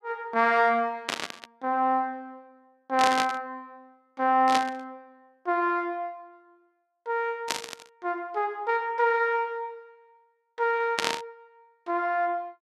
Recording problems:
static burst; 5 times, first at 1 s; peak +4 dB vs average level

